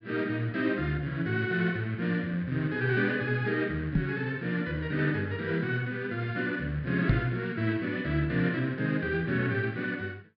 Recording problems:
treble cut off; nothing above 5.5 kHz
microphone bump; at 4 s and at 7 s; peak +8 dB vs average level

